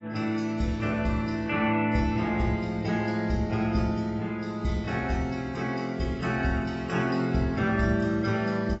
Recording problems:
codec artefacts; AAC, log-spectral distance 2 dB, nothing above 7.6 kHz

